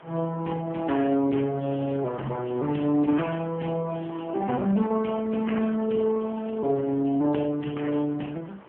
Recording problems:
phone line; 150 Hz to 3.2 kHz, AMR-NB
background hiss; SNR 21 dB

